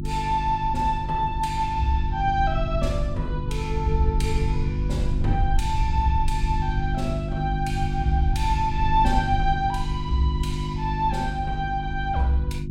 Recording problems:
hum; 50 Hz, harmonics up to 350 Hz, SNR 4 dB
low-frequency rumble; below 74 Hz, SNR 4 dB

